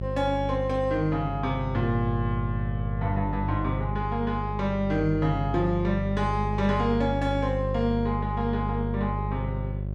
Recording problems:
mains hum; 50 Hz, harmonics up to 600 Hz, SNR 3 dB

